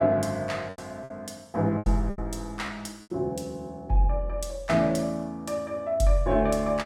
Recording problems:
packet loss; 5% of the sound replaced, filled with repeated pitch periods

